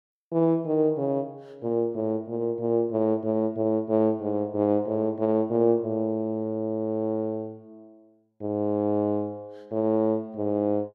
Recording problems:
none

